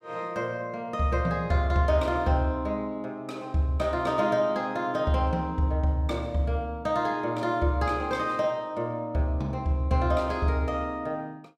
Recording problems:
none

